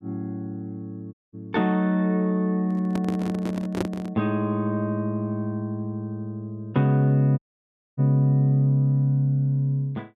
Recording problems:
dropout; at 1 s and at 7.5 s for 0.5 s
handling noise; from 2.5 to 4 s; peak +1 dB vs average level

